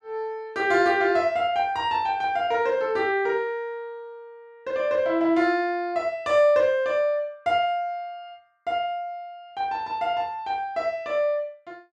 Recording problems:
none

